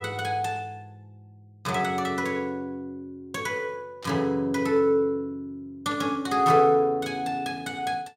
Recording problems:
static burst; at 4 s and at 6 s; peak -12 dB vs average level

